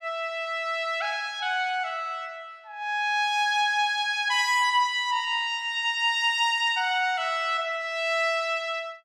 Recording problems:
none

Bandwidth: 15.5 kHz